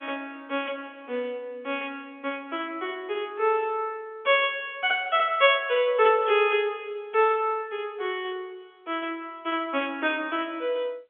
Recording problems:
telephone audio; 320 Hz to 3.6 kHz, G.711

